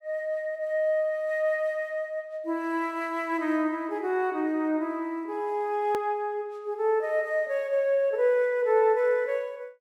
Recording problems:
hard cut with a click; at 6 s

